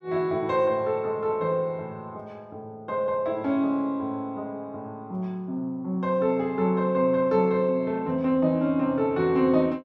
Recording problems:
none

